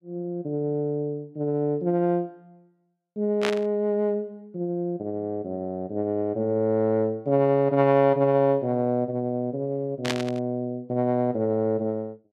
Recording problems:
static burst; at 3.5 s and at 10 s; peak +2 dB vs average level

